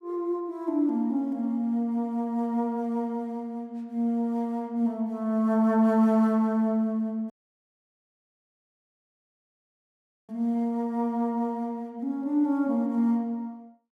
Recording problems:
dropout; at 7.5 s for 3 s

